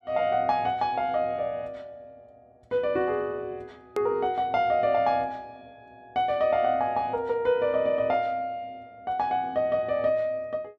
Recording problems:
hard cut with a click; at 4 s

